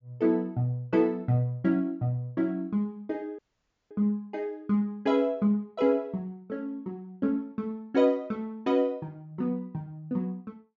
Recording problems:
treble cut off; nothing above 7.3 kHz
dropout; at 3.5 s for 0.5 s

